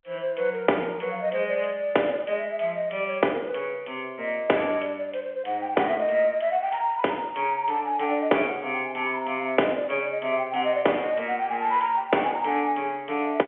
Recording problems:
telephone audio; 300 Hz to 3.3 kHz, G.711

